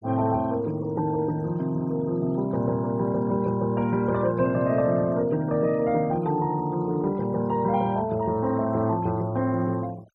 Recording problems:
denoising artefacts; signal-to-artefact ratio 26 dB

